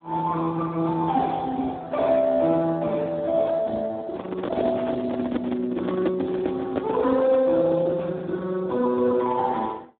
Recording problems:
telephone audio; 190 Hz to 2.3 kHz, Speex
handling noise; from 4 to 7.5 s; peak +1 dB vs average level

